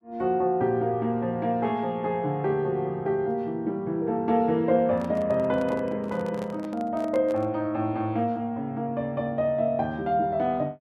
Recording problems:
handling noise; from 5 to 7.5 s; peak -8 dB vs average level

